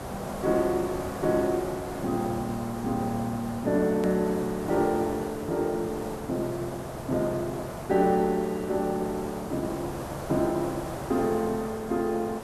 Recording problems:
background hiss; SNR 9 dB
hard cut with a click; at 4 s

